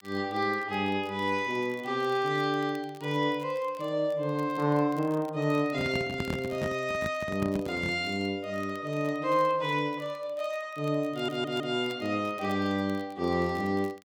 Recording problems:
crackle; vinyl, SNR 27 dB
microphone handling noise; from 5.5 to 8 s; peak 0 dB vs average level
audio stuttering; at 11 s

